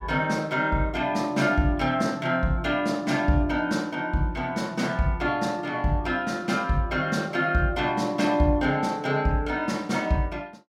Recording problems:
none

